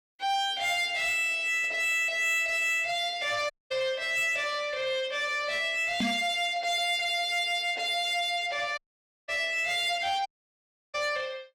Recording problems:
distortion; soft clipping, signal-to-distortion ratio 12 dB
dropout; at 3.5 s, at 9 s for 0.5 s and at 10 s for 0.5 s
knock on the microphone; at 6 s; peak +2 dB vs average level

